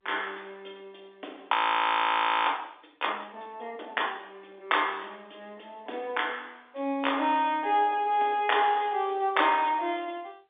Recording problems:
telephone audio; 240 Hz to 3.6 kHz, G.711
audio freezing; at 1.5 s for 1 s

